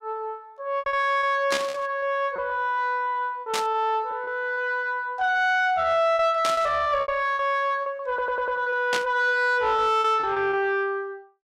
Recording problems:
distortion; soft clipping, signal-to-distortion ratio 10 dB
packet loss; 10% of the sound replaced, filled with repeated pitch periods
static burst; 4 times, first at 1.5 s; peak +1 dB vs average level
audio stuttering; at 8 s

